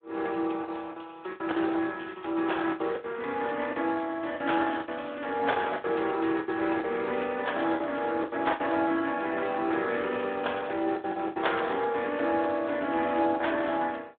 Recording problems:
telephone audio; 260 Hz to 3.6 kHz, Speex
packet loss; 9% of the sound replaced, filled with the last packet

